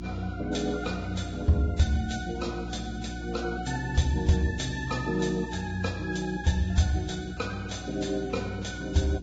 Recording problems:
lossy codec; Vorbis, log-spectral distance 4 dB, nothing above 7.6 kHz
hum; 60 Hz, harmonics up to 360 Hz, SNR 10 dB

